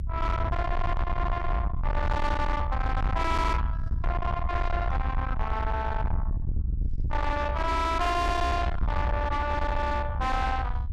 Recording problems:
distorted audio; soft clipping, signal-to-distortion ratio 7 dB
low-frequency rumble; below 110 Hz, SNR 2 dB

